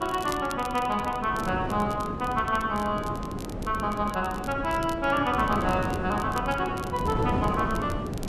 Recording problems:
wind noise; below 430 Hz, SNR 6 dB
crackling; vinyl, SNR 19 dB

